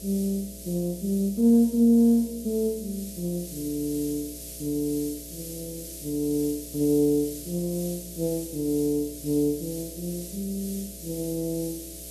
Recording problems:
hum; 60 Hz, harmonics up to 660 Hz, SNR 20 dB
background hiss; SNR 12 dB

